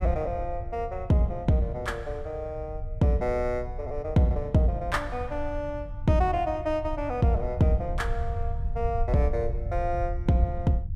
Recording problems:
rumble; below 80 Hz, SNR 8 dB

